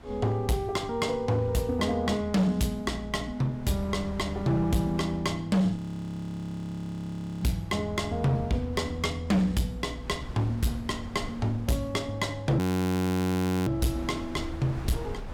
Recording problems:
distortion; hard clipping, signal-to-distortion ratio 11 dB
wind noise; below 370 Hz, SNR 17 dB
audio freezing; at 6 s for 1.5 s and at 13 s for 1 s

